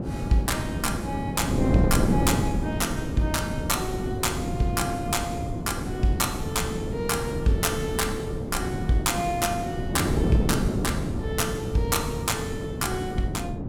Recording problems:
wind noise; below 320 Hz, SNR 1 dB

